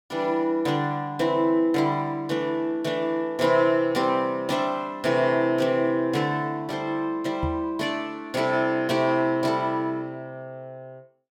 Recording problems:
microphone thump; at 7.5 s; peak -1 dB vs average level

